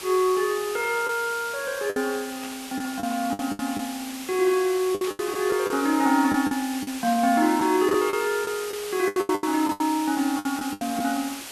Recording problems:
hiss; slope 0 dB per octave, SNR 11 dB
packet loss; 10% of the sound replaced, filled with the last packet
static burst; at 2.5 s, at 5 s and at 7 s; peak -10 dB vs average level

